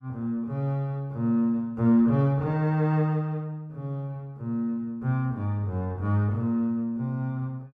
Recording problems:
none

